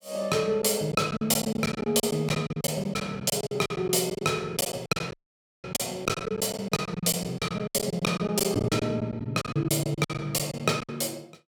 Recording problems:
packet loss; 16% of the sound replaced, filled with silence
audio cutting out; at 5 s for 0.5 s

